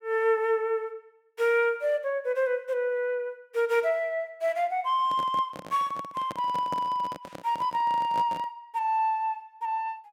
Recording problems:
microphone handling noise; from 5 to 8.5 s; peak -5 dB vs average level

